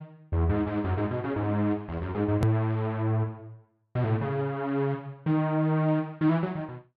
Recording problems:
edit click; at 2.5 s

